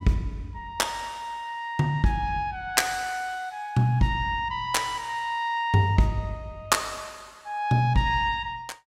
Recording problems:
none

